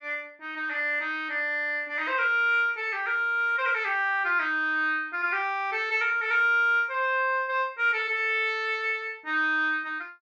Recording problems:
none

